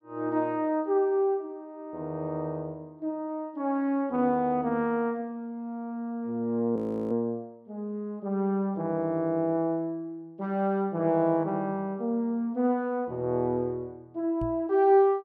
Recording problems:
frozen audio; at 7 s
microphone thump; at 14 s; peak -4 dB vs average level

